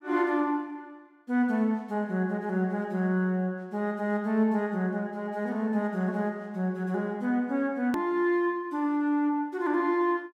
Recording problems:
edit click; at 8 s

